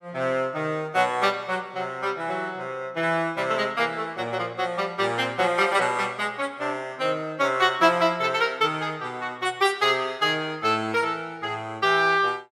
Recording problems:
none

